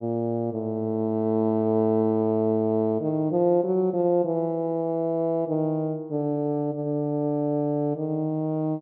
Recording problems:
low-pass filter; nothing above 5.5 kHz

